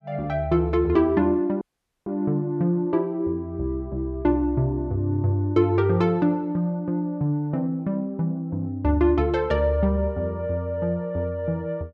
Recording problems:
dropout; at 1.5 s

